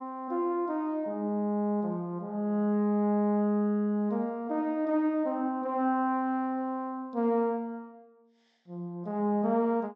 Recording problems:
low-pass filter; nothing above 8 kHz

